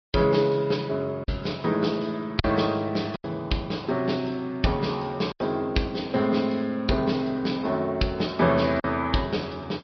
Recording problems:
treble cut off; nothing above 5.2 kHz
lossy codec; MP3, log-spectral distance 4 dB
packet loss; 3% of the sound replaced, filled with silence

